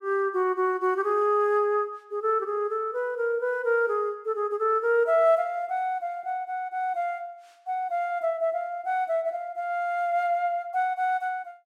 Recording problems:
none

